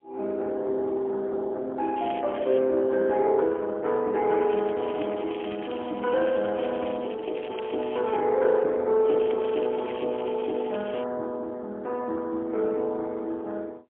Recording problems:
telephone audio; 240 Hz to 3 kHz, AMR-NB, then MP3
crackle; at 2 s, from 4.5 to 8 s and from 9 to 11 s; loose cable, SNR 18 dB

